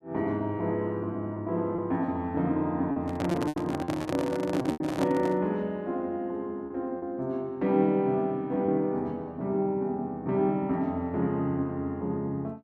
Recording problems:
packet loss; 4% of the sound replaced, filled with repeated pitch periods
handling noise; from 3 to 5.5 s; peak +1 dB vs average level

